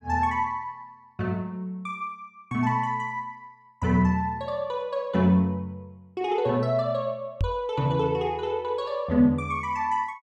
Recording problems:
knock on the microphone; at 7.5 s; peak +3 dB vs average level

